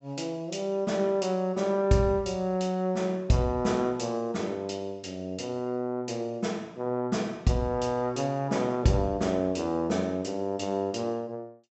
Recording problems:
low-pass filter; nothing above 7.9 kHz

